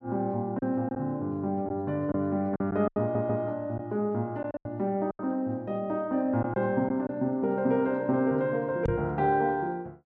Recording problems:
lost packets; 5% of the sound replaced, filled with silence
audio stuttering; at 3 s
knock on the microphone; at 9 s; peak +1 dB vs average level

